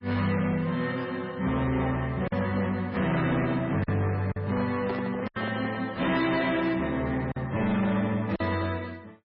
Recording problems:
lossy codec; MP3, log-spectral distance 3 dB
distorted audio; hard clipping, uneven, signal-to-distortion ratio 11 dB
packet loss; 3% of the sound replaced, filled with silence
handling noise; from 4.5 to 6 s; peak -3 dB vs average level

